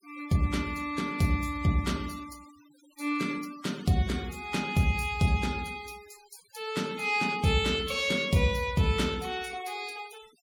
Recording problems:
denoising artefacts; signal-to-artefact ratio 20 dB

